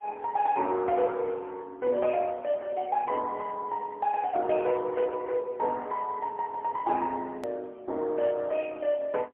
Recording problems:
telephone audio; 260 Hz to 3 kHz, AMR-NB, then MP3
edit click; at 7.5 s

